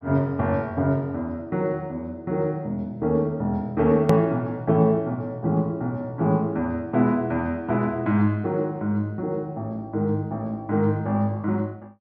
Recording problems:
low-pass filter; nothing above 5.9 kHz
edit click; at 4 s

